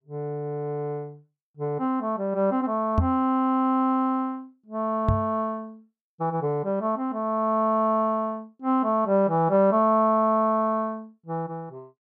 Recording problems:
microphone bump; at 3 s and at 5 s; peak +5 dB vs average level

